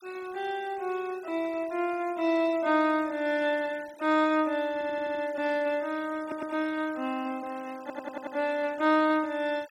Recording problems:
noise reduction artefacts; signal-to-artefact ratio 22 dB
stutter; at 4.5 s, at 6 s and at 8 s

